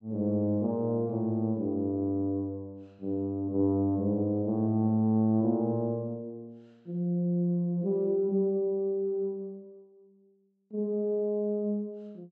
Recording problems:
none

